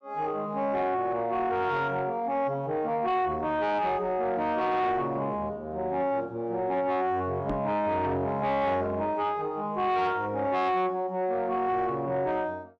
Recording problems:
distorted audio; soft clipping, signal-to-distortion ratio 11 dB
microphone thump; at 7.5 s; peak +1 dB vs average level

